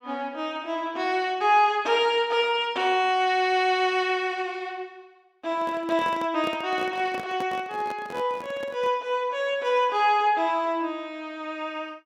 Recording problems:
handling noise; from 5.5 to 9 s; peak -6 dB vs average level

